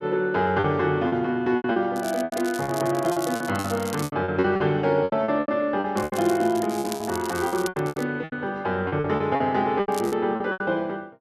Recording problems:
packet loss; 15% of the sound replaced, filled with repeated pitch periods
crackle; from 2 to 4 s, from 6 to 8 s and at 10 s; loose cable, SNR 15 dB

